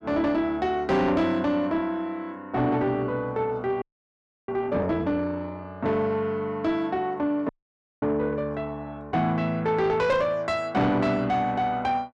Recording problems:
distortion; soft clipping, signal-to-distortion ratio 12 dB
frozen audio; at 4 s for 0.5 s and at 7.5 s for 0.5 s

